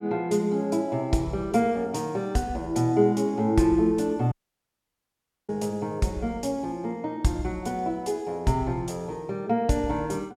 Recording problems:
audio cutting out; at 4.5 s for 1 s

